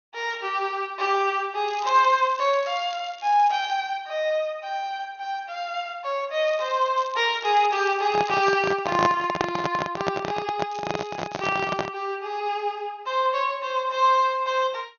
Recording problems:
low-pass filter; nothing above 6.5 kHz
crackling; from 1.5 to 3.5 s, from 6.5 to 8.5 s and at 11 s; loose cable, SNR 21 dB
handling noise; from 8 to 12 s; peak +4 dB vs average level

